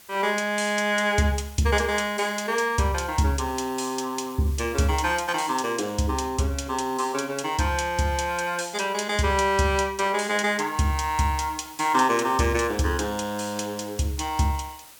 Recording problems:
hiss; slope 0 dB per octave, SNR 21 dB

